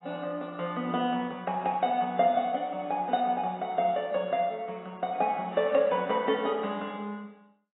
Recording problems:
lossy codec; AAC, log-spectral distance 2 dB, nothing above 3.5 kHz

